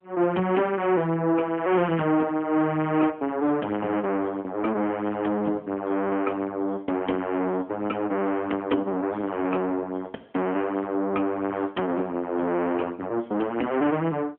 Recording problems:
phone line; 220 Hz to 3.8 kHz, AMR-NB

